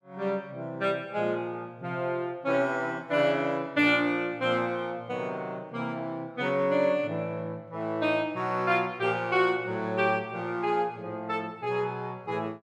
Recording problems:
none

